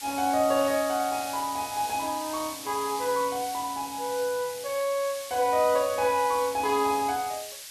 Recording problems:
hiss; slope +5 dB per octave, SNR 11 dB

